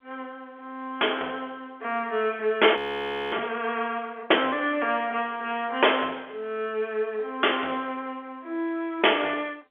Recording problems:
phone line; 300 Hz to 3.4 kHz, G.711
frozen audio; at 3 s for 0.5 s

